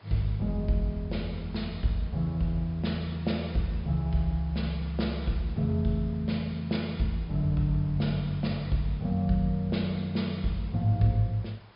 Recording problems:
treble cut off; nothing above 5.5 kHz
hiss; SNR 25 dB

